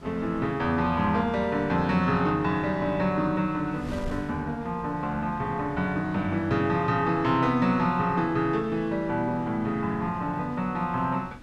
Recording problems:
wind noise; below 320 Hz, SNR 20 dB

